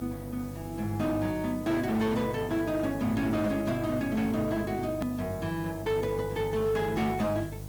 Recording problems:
lossy compression; Opus, log-spectral distance 4 dB, nothing above 20.1 kHz
distorted audio; hard clipping, signal-to-distortion ratio 10 dB
hum; 50 Hz, harmonics up to 800 Hz, SNR 12 dB
background hiss; slope -2 dB per octave, SNR 22 dB
edit click; at 5 s

